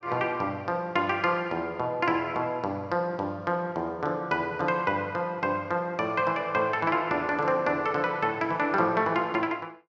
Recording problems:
none

